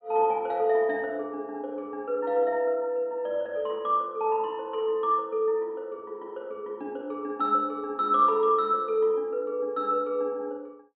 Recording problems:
treble cut off; nothing above 4 kHz

